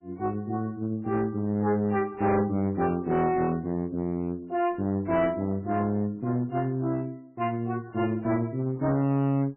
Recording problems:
codec artefacts; MP3, log-spectral distance 2 dB, nothing above 2.6 kHz
distorted audio; hard clipping, uneven, signal-to-distortion ratio 9 dB

